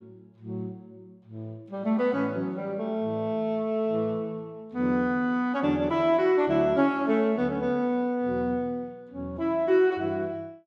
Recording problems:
none

